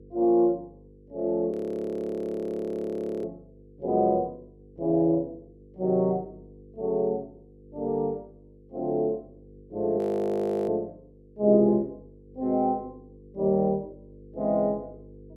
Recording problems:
hum; 50 Hz, harmonics up to 500 Hz, SNR 25 dB
frozen audio; at 1.5 s for 1.5 s and at 10 s for 0.5 s

